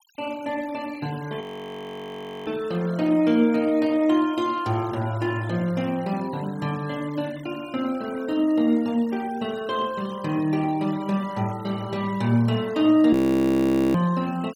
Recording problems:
noise reduction artefacts; signal-to-artefact ratio 23 dB
frozen audio; at 1.5 s for 1 s and at 13 s for 1 s

